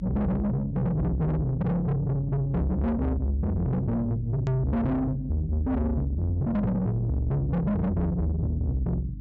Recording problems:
treble cut off; nothing above 8 kHz
distorted audio; soft clipping, signal-to-distortion ratio 6 dB
electrical hum; 50 Hz, harmonics up to 300 Hz, SNR 12 dB
edit click; at 4.5 s

